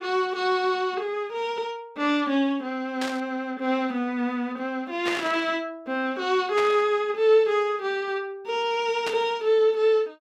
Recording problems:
static burst; 4 times, first at 3 s; peak -1 dB vs average level

